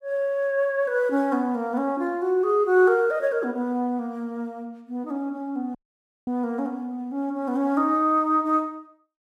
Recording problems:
dropout; at 6 s for 0.5 s

